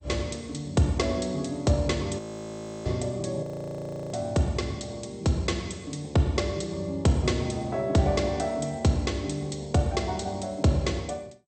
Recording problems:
lossy compression; MP2, log-spectral distance 4 dB, nothing above 8.5 kHz
frozen audio; at 2 s for 0.5 s and at 3.5 s for 0.5 s

